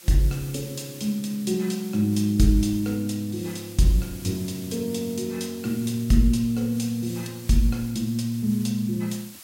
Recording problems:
hiss; slope +2 dB per octave, SNR 17 dB

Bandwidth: 16 kHz